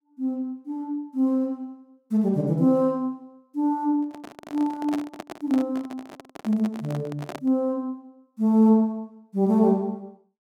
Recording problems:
handling noise; from 4 to 7.5 s; peak -4 dB vs average level

